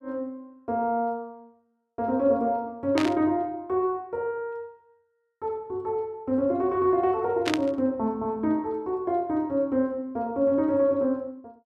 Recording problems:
static burst; at 3 s and at 7.5 s; peak +2 dB vs average level

